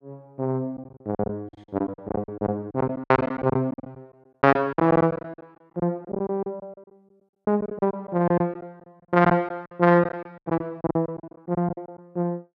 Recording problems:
lost packets; 18% of the sound replaced, filled with silence

